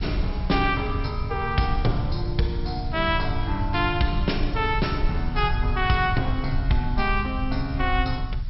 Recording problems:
low-pass filter; nothing above 5.5 kHz
codec artefacts; G.722, log-spectral distance 3 dB
background hiss; slope -1 dB per octave, SNR 25 dB
low-frequency rumble; below 72 Hz, SNR 5 dB

